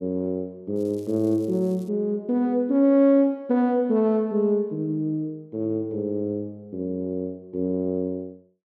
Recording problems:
crackle; from 1 to 2 s; loose cable, SNR 30 dB

